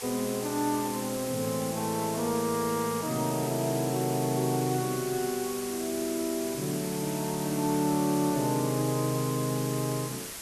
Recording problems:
hiss; slope 0 dB per octave, SNR 7 dB

